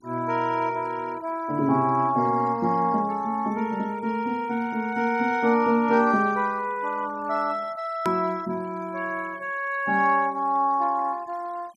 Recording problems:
denoising artefacts; signal-to-artefact ratio 25 dB
edit click; at 8 s

